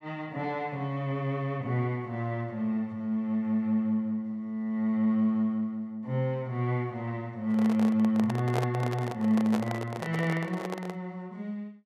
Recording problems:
handling noise; from 7.5 to 11 s; peak +1 dB vs average level

